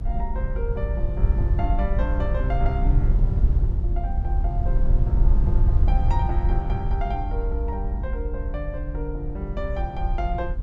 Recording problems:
rumble; below 66 Hz, SNR -7 dB

